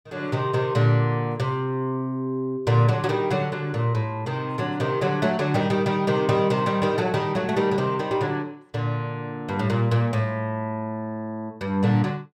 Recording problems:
none

